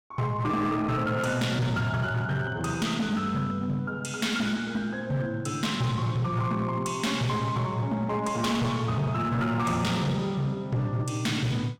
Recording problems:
distortion; hard clipping, signal-to-distortion ratio 11 dB

